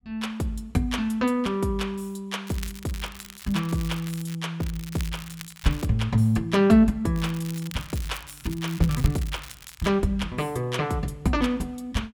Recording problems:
crackle; from 2.5 to 4.5 s, from 4.5 to 6 s and from 7 to 10 s; loose cable, SNR 16 dB

